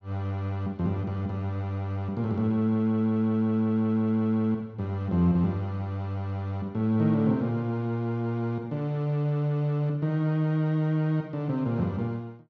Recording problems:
treble missing; nothing above 8 kHz

